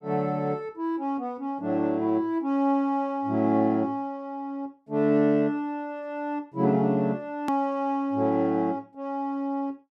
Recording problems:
edit click; at 7.5 s

